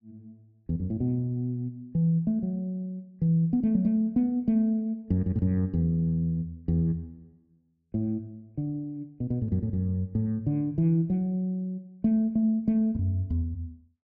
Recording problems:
none

